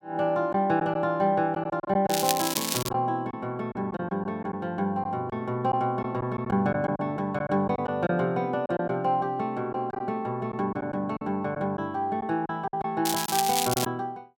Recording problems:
lost packets; 7% of the sound replaced, filled with silence
crackling; at 2 s and at 13 s; loose cable, SNR 2 dB

